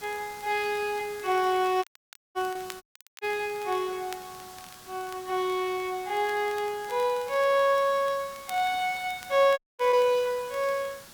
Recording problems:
hiss; slope -1 dB per octave, SNR 19 dB
crackling; vinyl, SNR 24 dB
packet loss; 1.4% of the sound replaced, filled with repeated pitch periods
dropout; at 2 s for 0.5 s, at 3 s and at 9.5 s
microphone thump; at 2.5 s; peak -41 dB vs average level

